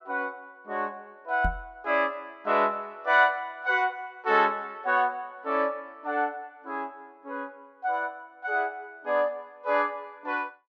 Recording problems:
knock on the microphone; at 1.5 s; peak +1 dB vs average level

